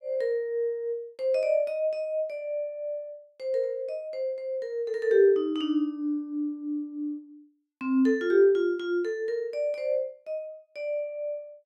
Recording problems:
none

